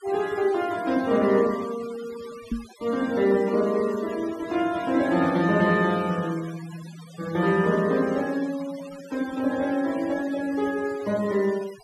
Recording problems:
denoising artefacts; signal-to-artefact ratio 18 dB
microphone bump; at 2.5 s; peak 0 dB vs average level

